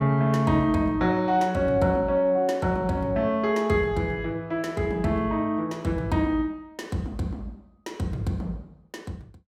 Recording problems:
none

